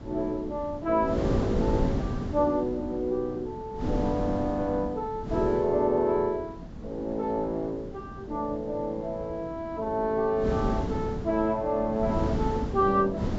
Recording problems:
treble missing; nothing above 8 kHz
wind on the microphone; below 310 Hz, SNR 6 dB

